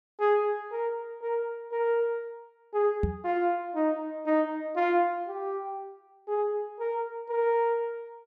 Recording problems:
microphone thump; at 3 s; peak +4 dB vs average level

